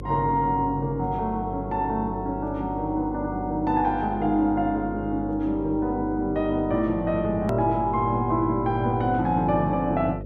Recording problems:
electrical hum; 50 Hz, harmonics up to 550 Hz, SNR 11 dB
click at an edit; at 7.5 s

